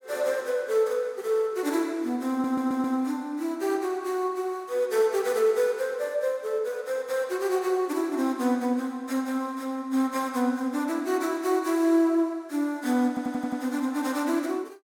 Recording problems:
audio stuttering; at 2.5 s and at 13 s

